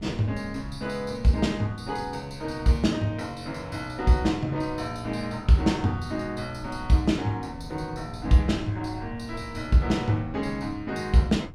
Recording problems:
wind on the microphone; below 140 Hz, SNR 18 dB

